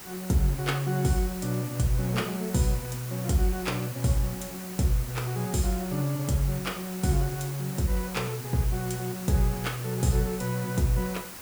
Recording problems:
background hiss; slope -2 dB per octave, SNR 11 dB

